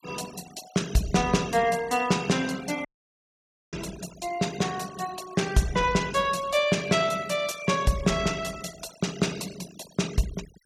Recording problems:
denoising artefacts; signal-to-artefact ratio 16 dB
dropout; at 3 s for 1 s

